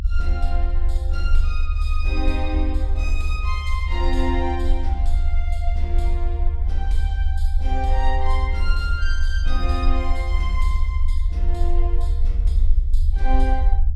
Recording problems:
rumble; below 68 Hz, strongest tone 22 Hz, SNR -7 dB

